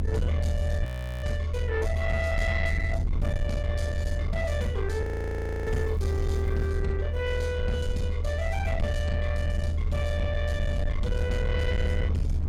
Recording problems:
distortion; soft clipping, signal-to-distortion ratio 10 dB
low-frequency rumble; below 80 Hz, strongest tone 78 Hz, SNR -3 dB
wind noise; below 550 Hz, SNR 19 dB
frozen audio; at 1 s and at 5 s for 0.5 s
crackling; at 5.5 s; loose cable, SNR 28 dB

